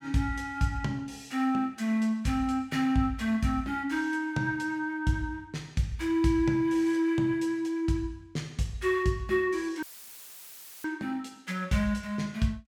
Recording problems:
dropout; at 10 s for 1 s; filled with static

